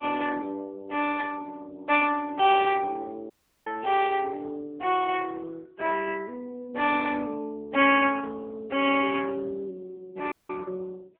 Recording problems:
phone line; 300 Hz to 3.3 kHz, AMR-NB
audio cutting out; at 3.5 s and at 10 s

